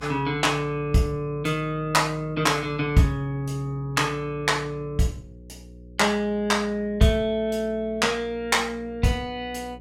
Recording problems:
hum; 60 Hz, harmonics up to 540 Hz, SNR 21 dB

